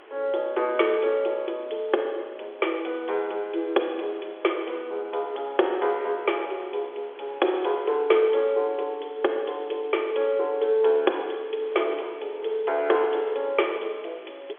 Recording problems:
telephone audio; 300 Hz to 3.4 kHz, G.711
hiss; SNR 28 dB
wind on the microphone; below 1.2 kHz, SNR 24 dB

